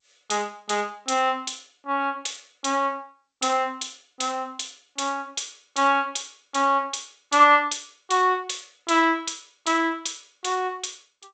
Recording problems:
lossy compression; G.722, log-spectral distance 7 dB, nothing above 7.8 kHz

